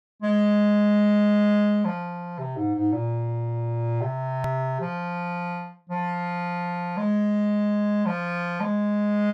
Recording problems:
hard cut with a click; at 4.5 s

